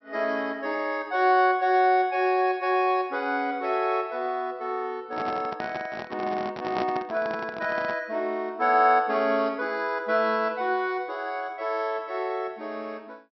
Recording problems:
treble missing; nothing above 5.7 kHz
handling noise; from 5 to 8 s; peak -1 dB vs average level

